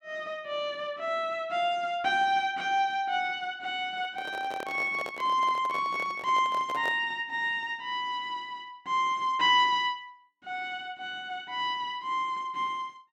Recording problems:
handling noise; from 4 to 7 s; peak -5 dB vs average level

